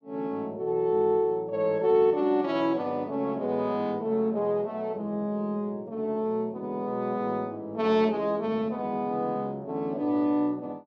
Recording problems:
none

